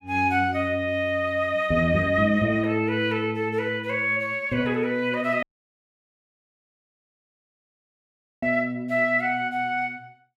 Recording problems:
dropout; at 5.5 s for 3 s

